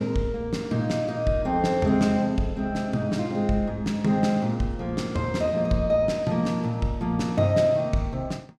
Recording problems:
none

